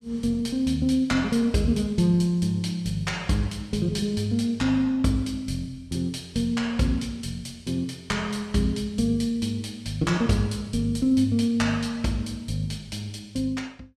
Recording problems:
none

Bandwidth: 14.5 kHz